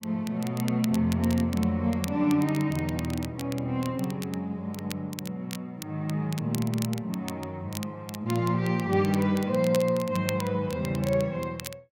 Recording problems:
crackle; vinyl, SNR 14 dB

